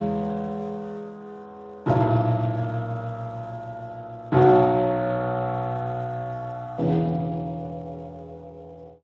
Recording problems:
lossy compression; Speex, log-spectral distance 2 dB

